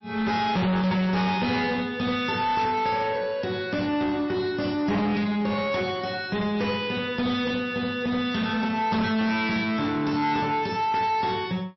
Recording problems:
codec artefacts; MP3, log-spectral distance 3 dB, nothing above 5.7 kHz
distortion; soft clipping, signal-to-distortion ratio 6 dB

